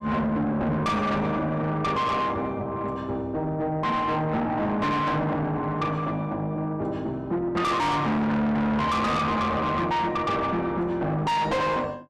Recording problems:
distortion; soft clipping, signal-to-distortion ratio 5 dB

